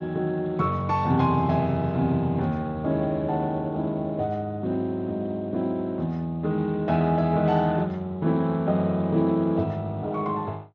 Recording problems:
lossy codec; Speex, log-spectral distance 2 dB

